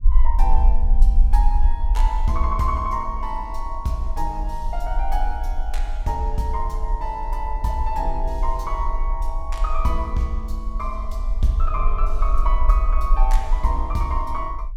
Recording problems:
low-frequency rumble; below 42 Hz, strongest tone 24 Hz, SNR -2 dB

